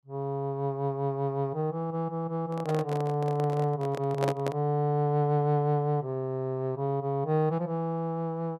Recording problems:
handling noise; from 2.5 to 4.5 s; peak +2 dB vs average level

